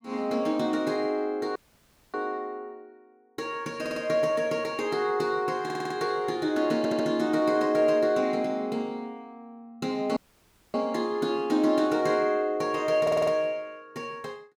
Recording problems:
dropout; at 1.5 s for 0.5 s and at 10 s for 0.5 s
audio stuttering; 4 times, first at 4 s

